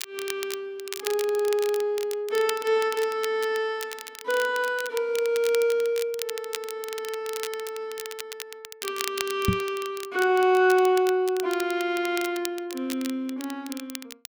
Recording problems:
crackling; vinyl, SNR 11 dB
microphone thump; at 9.5 s; peak +7 dB vs average level

